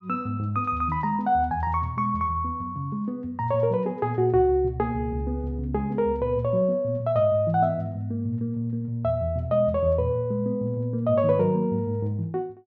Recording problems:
none

